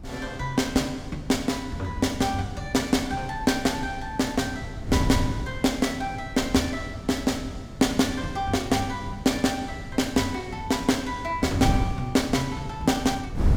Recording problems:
wind noise; below 160 Hz, SNR 9 dB

